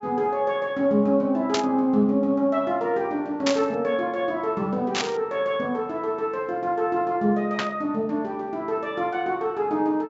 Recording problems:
treble missing; nothing above 8 kHz
static burst; 4 times, first at 1.5 s; peak +3 dB vs average level

